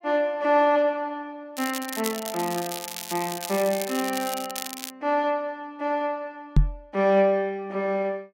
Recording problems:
crackle; from 1.5 to 5 s; loose cable, SNR 8 dB
microphone bump; at 6.5 s; peak +10 dB vs average level

